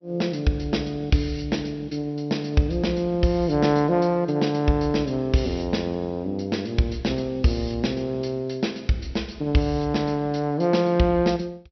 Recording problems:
low-pass filter; nothing above 5.9 kHz

